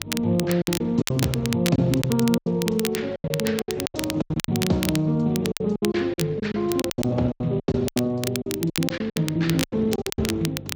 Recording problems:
codec artefacts; AAC, then Speex, log-spectral distance 3 dB
electrical hum; 50 Hz, harmonics up to 500 Hz, SNR 18 dB
wind on the microphone; below 410 Hz, SNR 16 dB
crackle; vinyl, SNR 8 dB
packet loss; 17% of the sound replaced, filled with silence

